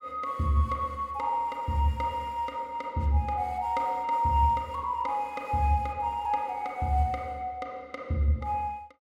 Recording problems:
none

